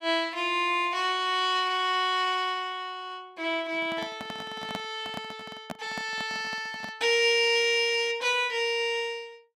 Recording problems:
handling noise; from 3.5 to 7 s; peak -5 dB vs average level

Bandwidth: 15.5 kHz